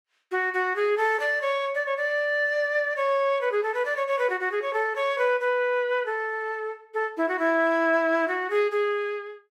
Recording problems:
none

